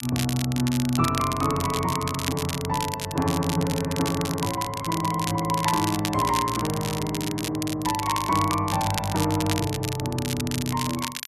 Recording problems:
crackling; vinyl, SNR 7 dB

